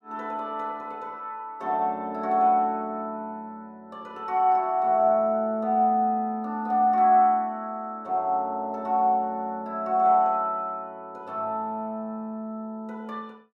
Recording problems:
none

